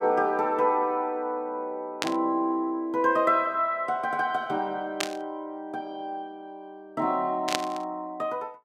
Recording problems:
burst of static; at 2 s, at 5 s and at 7.5 s; peak +5 dB vs average level

